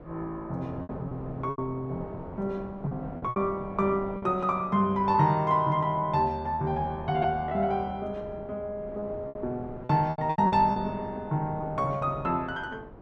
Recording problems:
wind noise; below 610 Hz, SNR 16 dB
packet loss; 7% of the sound replaced, filled with repeated pitch periods

